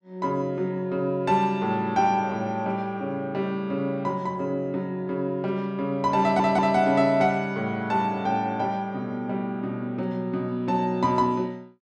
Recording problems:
audio stuttering; at 6 s

